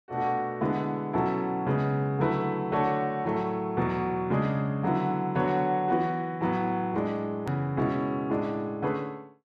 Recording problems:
click at an edit; at 7.5 s

